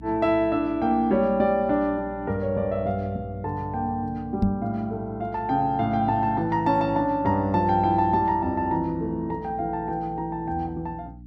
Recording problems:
electrical hum; 60 Hz, harmonics up to 300 Hz, SNR 18 dB
microphone thump; at 4.5 s; peak +5 dB vs average level

